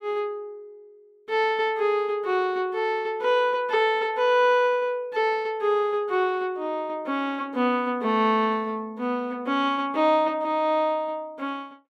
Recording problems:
none

